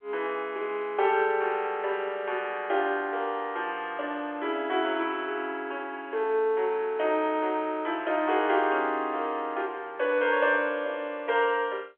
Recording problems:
phone line; 320 Hz to 3.3 kHz, G.711

